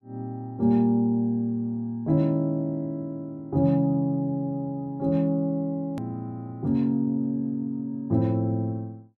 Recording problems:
click at an edit; at 6 s

